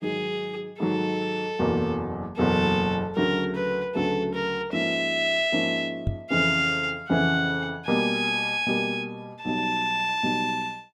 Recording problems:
microphone thump; at 6 s; peak +1 dB vs average level

